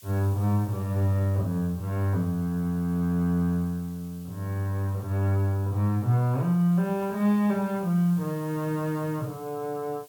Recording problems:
background hiss; slope +4 dB per octave, SNR 24 dB

